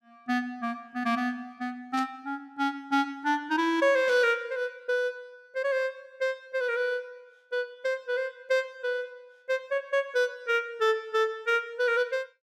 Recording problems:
burst of static; at 2 s and at 4 s; peak -8 dB vs average level

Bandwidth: 15.5 kHz